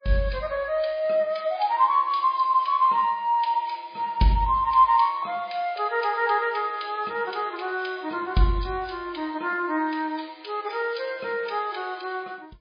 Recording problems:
lossy compression; MP3, log-spectral distance 4 dB, nothing above 5 kHz

